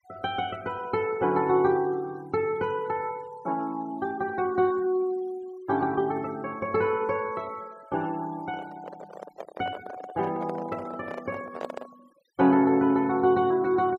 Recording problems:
denoising artefacts; signal-to-artefact ratio 24 dB
microphone handling noise; from 8.5 to 12 s; peak -2 dB vs average level

